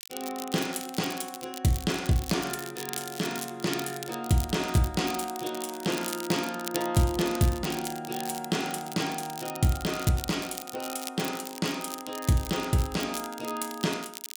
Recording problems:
crackling; vinyl, SNR 10 dB

